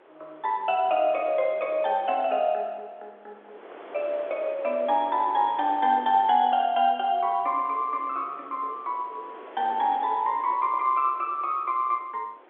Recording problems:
phone line; 320 Hz to 3.5 kHz, G.711
wind noise; below 1.2 kHz, SNR 21 dB

